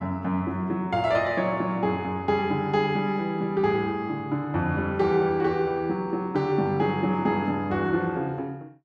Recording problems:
none

